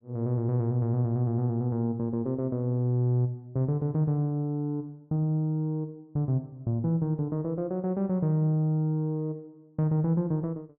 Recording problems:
none

